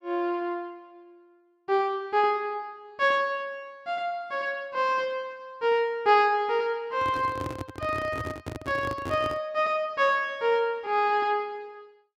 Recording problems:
microphone handling noise; from 7 to 9.5 s; peak -4 dB vs average level

